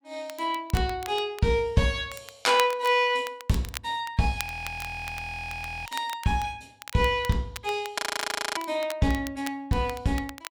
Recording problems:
crackle; vinyl, SNR 15 dB
audio freezing; at 4.5 s for 1.5 s and at 8 s for 0.5 s

